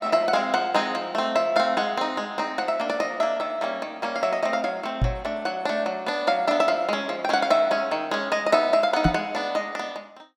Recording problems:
microphone thump; at 5 s and at 9 s; peak +6 dB vs average level

